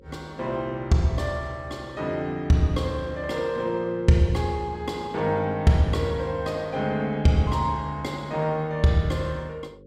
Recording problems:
hum; 50 Hz, harmonics up to 550 Hz, SNR 25 dB

